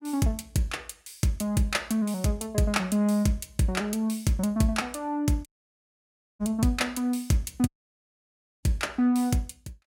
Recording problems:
audio cutting out; at 5.5 s for 1 s and at 7.5 s for 1 s

